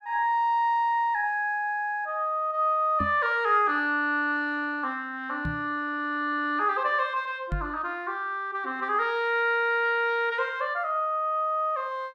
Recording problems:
knock on the microphone; at 3 s, at 5.5 s and at 7.5 s; peak -1 dB vs average level

